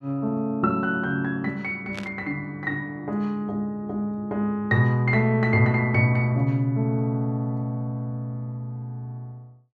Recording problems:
burst of static; at 2 s; peak -6 dB vs average level

